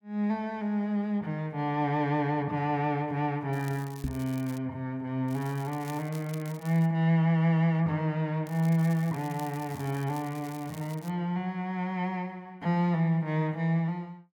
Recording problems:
crackle; from 3.5 to 4.5 s, from 5.5 to 7 s and from 8.5 to 11 s; loose cable, SNR 21 dB
microphone bump; at 4 s; peak 0 dB vs average level

